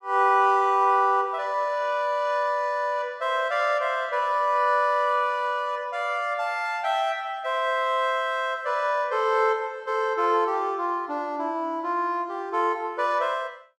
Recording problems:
none

